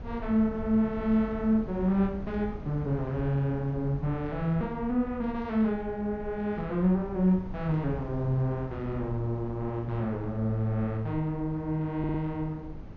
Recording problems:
treble missing; nothing above 6.6 kHz
wind noise; below 190 Hz, SNR 13 dB
stutter; at 12 s

